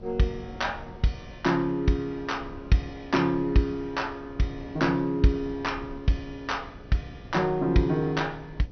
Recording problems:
low-pass filter; nothing above 6.1 kHz
hum; 60 Hz, harmonics up to 900 Hz, SNR 26 dB
background hiss; SNR 30 dB
wind noise; below 180 Hz, SNR 19 dB

